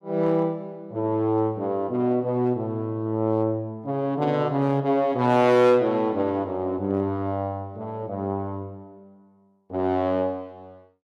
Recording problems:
distorted audio; hard clipping, uneven, signal-to-distortion ratio 12 dB

